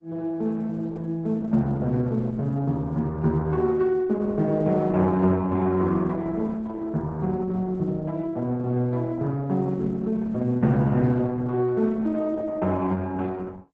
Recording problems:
lossy codec; Opus, log-spectral distance 2 dB

